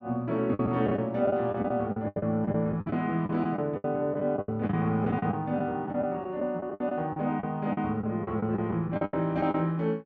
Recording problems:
packet loss; 14% of the sound replaced, filled with the last packet

